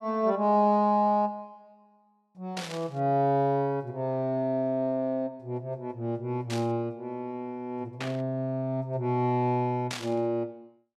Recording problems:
static burst; 4 times, first at 2.5 s; peak -2 dB vs average level

